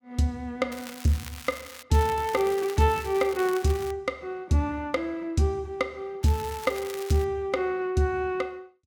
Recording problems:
crackle; from 0.5 to 2 s, from 2 to 4 s and from 6 to 7.5 s; loose cable, SNR 15 dB

